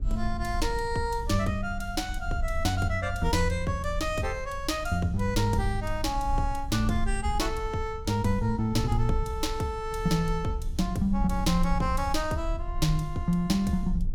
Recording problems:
low-frequency rumble; below 60 Hz, SNR 7 dB

